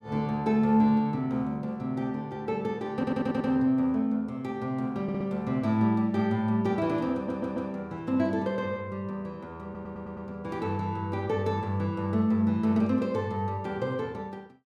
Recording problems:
stutter; 4 times, first at 3 s

